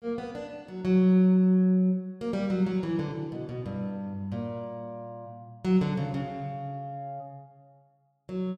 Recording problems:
none

